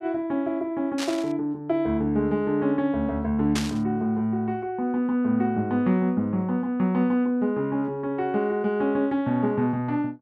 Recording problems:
static burst; at 1 s and at 3.5 s; peak -1 dB vs average level

